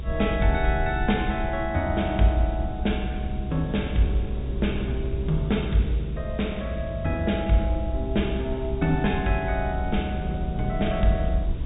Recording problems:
low-pass filter; nothing above 4 kHz
hum; 60 Hz, harmonics up to 1.7 kHz, SNR 27 dB
background hiss; SNR 27 dB
rumble; below 72 Hz, SNR 6 dB
wind noise; below 190 Hz, SNR 12 dB

